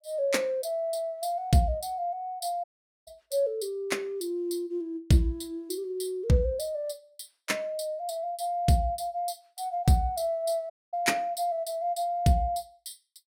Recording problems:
dropout; at 2.5 s and at 11 s

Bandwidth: 17 kHz